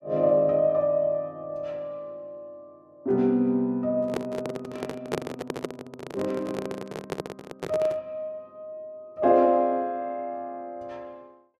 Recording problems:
handling noise; from 4 to 8 s; peak +2 dB vs average level

